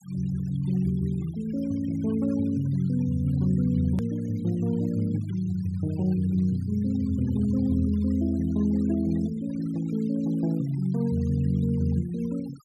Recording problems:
denoising artefacts; signal-to-artefact ratio 25 dB
click at an edit; at 4 s

